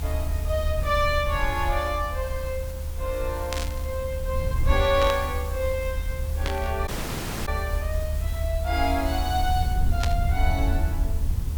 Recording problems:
background hiss; slope -2 dB per octave, SNR 14 dB
rumble; below 76 Hz, SNR 0 dB
static burst; 4 times, first at 3.5 s; peak +2 dB vs average level
audio cutting out; at 7 s for 0.5 s

